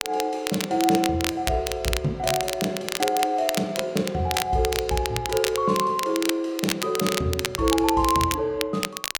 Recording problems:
crackle; vinyl, SNR 5 dB

